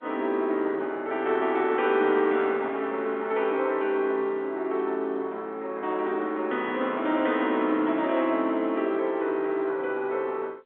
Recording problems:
phone line; 240 Hz to 3.5 kHz, G.711

